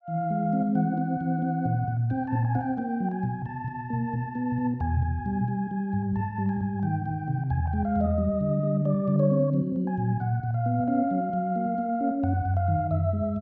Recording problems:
none

